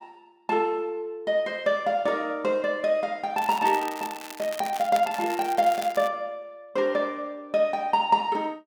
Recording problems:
crackle; from 3.5 to 6 s; loose cable, SNR 14 dB

